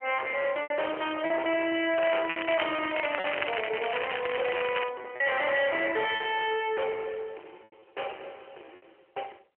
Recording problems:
telephone audio; 320 Hz to 3.2 kHz, AMR-NB
distorted audio; soft clipping, signal-to-distortion ratio 6 dB
packet loss; 6% of the sound replaced, filled with repeated pitch periods
crackling; from 2 to 5 s; loose cable, SNR 6 dB

